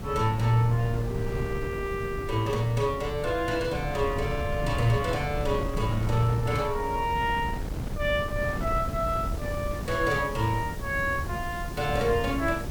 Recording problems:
hiss; slope +3 dB per octave, SNR 21 dB
wind noise; below 200 Hz, SNR 6 dB

